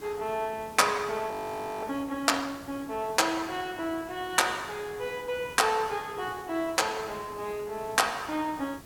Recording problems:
background hiss; SNR 18 dB
frozen audio; at 1.5 s for 0.5 s

